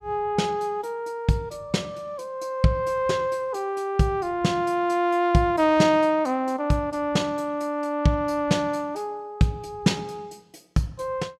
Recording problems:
none

